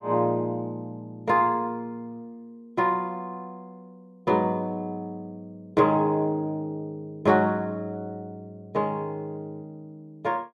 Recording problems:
none

